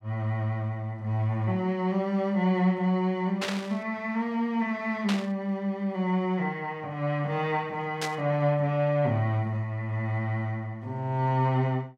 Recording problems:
burst of static; at 3.5 s, at 5 s and at 8 s; peak +1 dB vs average level

